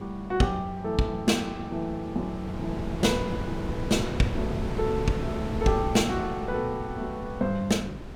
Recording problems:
wind on the microphone; below 330 Hz, SNR 7 dB

